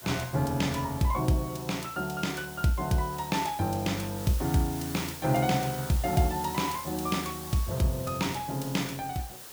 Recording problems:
background hiss; SNR 12 dB

